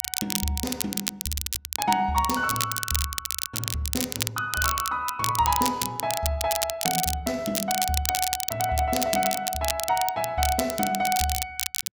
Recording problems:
crackle; vinyl, SNR 1 dB

